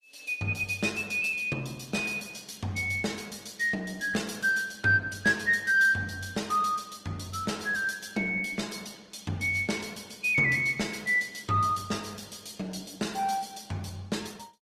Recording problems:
codec artefacts; Opus, log-spectral distance 5 dB, nothing above 14.7 kHz

